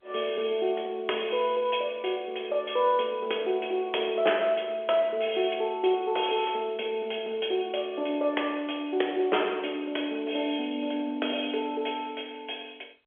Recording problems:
phone line; 320 Hz to 3.4 kHz, G.711

